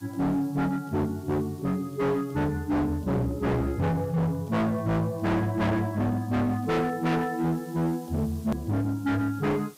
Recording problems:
distortion; hard clipping, signal-to-distortion ratio 6 dB
hiss; SNR 26 dB
edit click; at 8.5 s

